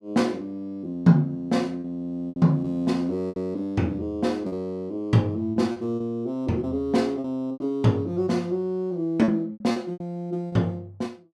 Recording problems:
lost packets; 7% of the sound replaced, filled with repeated pitch periods

